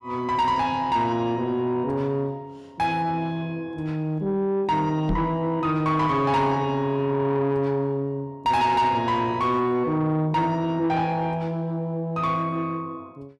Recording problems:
distorted audio; soft clipping, signal-to-distortion ratio 10 dB
microphone bump; at 5 s; peak +1 dB vs average level

